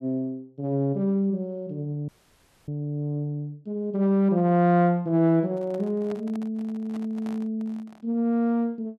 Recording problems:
frozen audio; at 2 s for 0.5 s
handling noise; from 5.5 to 8 s; peak -11 dB vs average level

